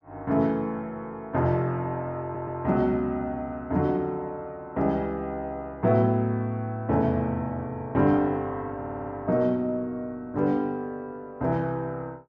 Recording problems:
audio stuttering; at 2 s and at 9 s

